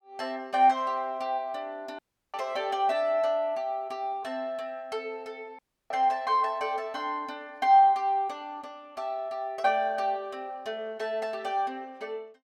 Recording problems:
audio cutting out; at 2 s and at 5.5 s

